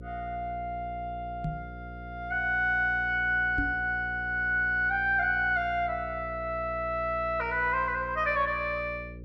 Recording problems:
mains hum; 60 Hz, harmonics up to 540 Hz, SNR 15 dB
microphone bump; at 1.5 s and at 3.5 s; peak -1 dB vs average level

